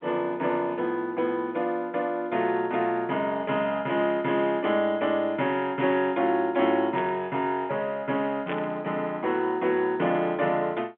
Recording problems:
telephone audio; 190 Hz to 3.4 kHz, G.711
burst of static; at 7 s and at 8.5 s; peak -6 dB vs average level

